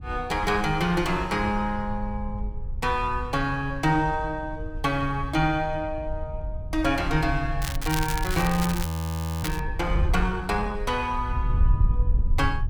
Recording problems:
wind on the microphone; below 78 Hz, SNR 5 dB
crackle; from 7.5 to 9.5 s; loose cable, SNR 8 dB
frozen audio; at 9 s for 0.5 s

